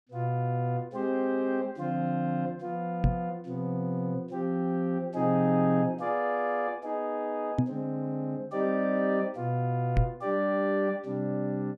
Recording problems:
microphone thump; at 3 s, at 7.5 s and at 10 s; peak +8 dB vs average level

